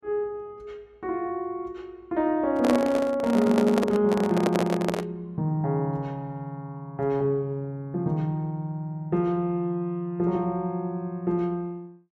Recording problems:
handling noise; from 2.5 to 5 s; peak +4 dB vs average level

